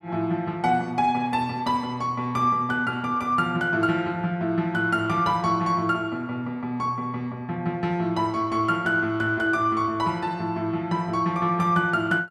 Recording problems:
none

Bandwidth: 14 kHz